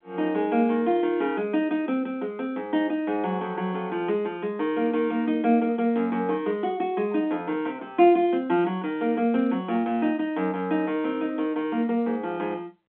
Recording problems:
phone line; 240 Hz to 3.6 kHz, G.711

